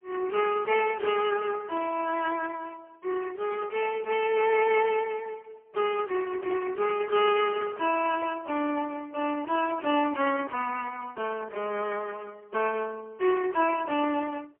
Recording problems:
telephone audio; 260 Hz to 3 kHz, AMR-NB, then MP3
handling noise; from 6 to 8.5 s; peak -10 dB vs average level

